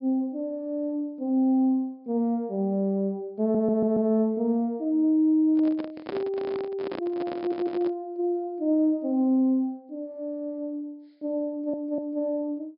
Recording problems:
treble cut off; nothing above 5.5 kHz
audio stuttering; at 3.5 s, at 7.5 s and at 11 s
handling noise; from 5.5 to 8 s; peak -4 dB vs average level

